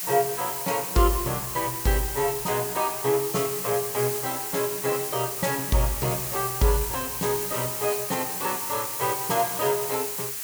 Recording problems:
hiss; slope +2 dB per octave, SNR 2 dB

